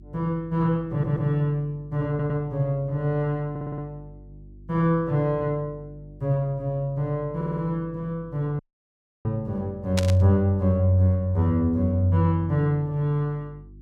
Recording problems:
hum; 50 Hz, harmonics up to 350 Hz, SNR 23 dB
stutter; 4 times, first at 1 s
audio cutting out; at 8.5 s for 0.5 s
static burst; at 10 s; peak +1 dB vs average level

